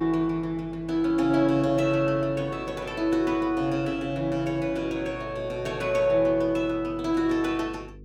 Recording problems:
mains hum; 50 Hz, harmonics up to 500 Hz, SNR 21 dB

